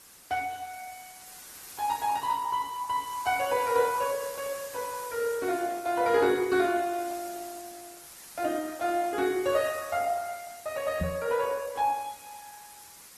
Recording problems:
codec artefacts; Opus, log-spectral distance 8 dB, nothing above 13.3 kHz
background hiss; slope 0 dB per octave, SNR 16 dB
microphone thump; at 11 s; peak +2 dB vs average level

